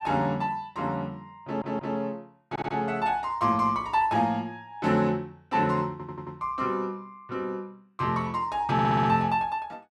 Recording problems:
stutter; 4 times, first at 1.5 s

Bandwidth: 14.5 kHz